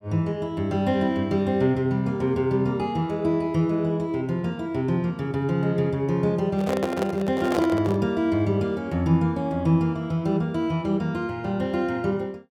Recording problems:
microphone handling noise; from 6.5 to 8 s; peak +1 dB vs average level

